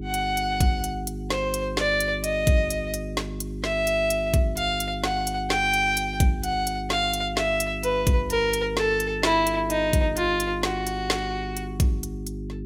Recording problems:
hum; 50 Hz, harmonics up to 400 Hz, SNR 9 dB

